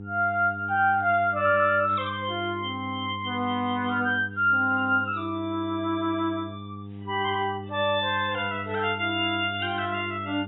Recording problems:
lossy codec; AAC, log-spectral distance 2 dB, nothing above 3.2 kHz
hum; 50 Hz, harmonics up to 500 Hz, SNR 14 dB

